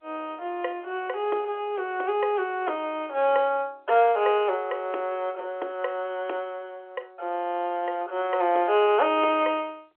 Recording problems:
telephone audio; 320 Hz to 3.3 kHz, G.711

